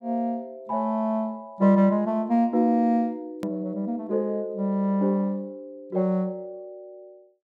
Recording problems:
click at an edit; at 3.5 s

